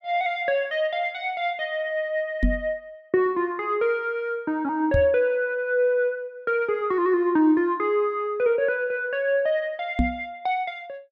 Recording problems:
microphone thump; at 2.5 s, at 5 s and at 10 s; peak +5 dB vs average level

